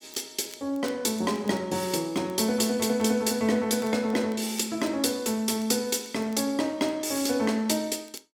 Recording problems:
crackling; vinyl, SNR 26 dB

